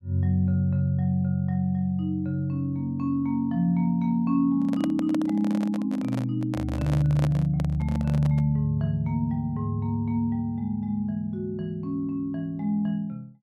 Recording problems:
handling noise; from 4.5 to 8.5 s; peak -2 dB vs average level

